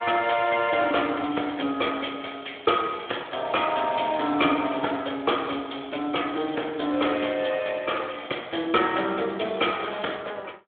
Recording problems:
telephone audio; 260 Hz to 3.5 kHz, Speex

